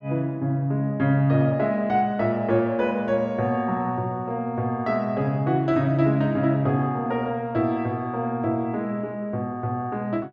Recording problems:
none

